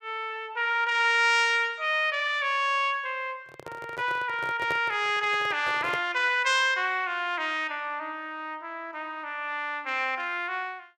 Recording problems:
handling noise; from 3.5 to 6 s; peak -5 dB vs average level

